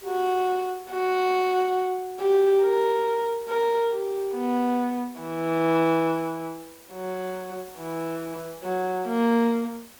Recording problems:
background hiss; slope -2 dB per octave, SNR 22 dB

